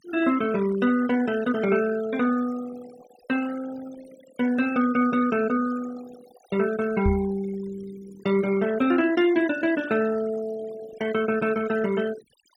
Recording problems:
denoising artefacts; signal-to-artefact ratio 17 dB
microphone thump; at 7 s; peak +2 dB vs average level

